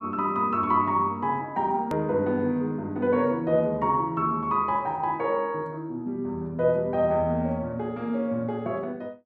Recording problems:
edit click; at 2 s

